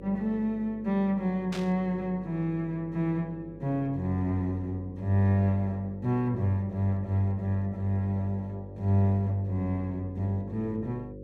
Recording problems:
electrical hum; 50 Hz, harmonics up to 550 Hz, SNR 16 dB
static burst; at 1.5 s; peak -7 dB vs average level

